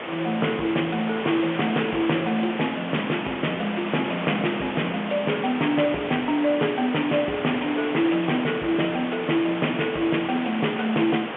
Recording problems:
phone line; 220 Hz to 3.4 kHz, G.711
distorted audio; soft clipping, signal-to-distortion ratio 13 dB
background hiss; SNR 7 dB

